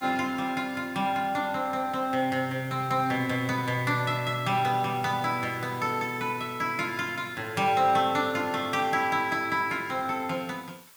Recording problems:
background hiss; SNR 23 dB

